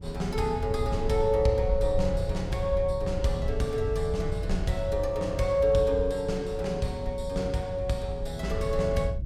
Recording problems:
wind on the microphone; below 82 Hz, SNR 7 dB

